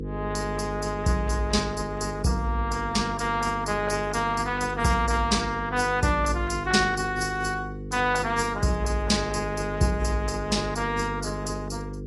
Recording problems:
lossy compression; AAC, log-spectral distance 4 dB, nothing above 11 kHz
electrical hum; 50 Hz, harmonics up to 500 Hz, SNR 9 dB

